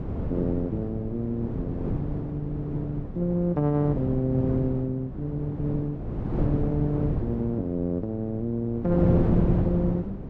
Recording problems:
wind noise; below 290 Hz, SNR 3 dB

